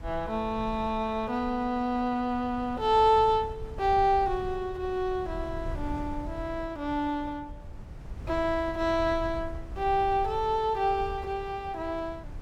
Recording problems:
wind on the microphone; below 100 Hz, SNR 14 dB

